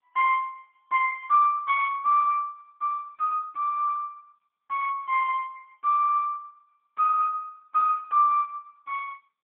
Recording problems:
telephone audio; 470 Hz to 2.5 kHz, AMR-NB

